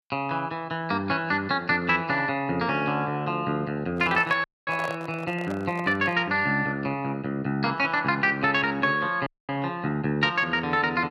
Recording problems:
handling noise; from 4 to 6 s; peak -4 dB vs average level
dropout; at 4.5 s and at 9.5 s

